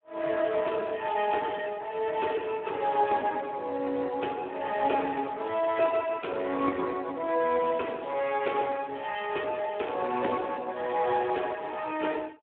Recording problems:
phone line; 240 Hz to 3.3 kHz, Speex

